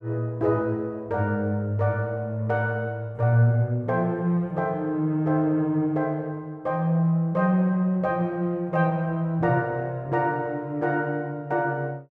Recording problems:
none

